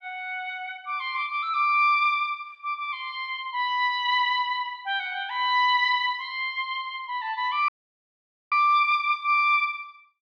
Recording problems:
audio cutting out; at 7.5 s for 1 s

